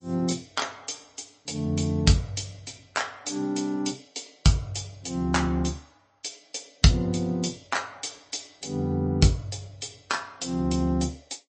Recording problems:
lossy compression; MP3, log-spectral distance 5 dB, nothing above 8 kHz

